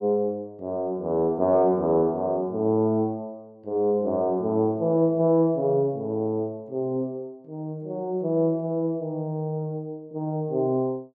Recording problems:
none

